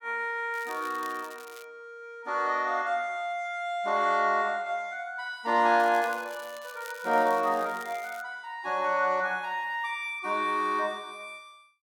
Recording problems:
crackle; from 0.5 to 1.5 s and from 6 to 8 s; loose cable, SNR 21 dB

